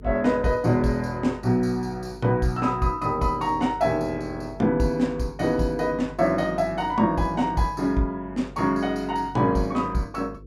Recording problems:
electrical hum; 50 Hz, harmonics up to 500 Hz, SNR 20 dB

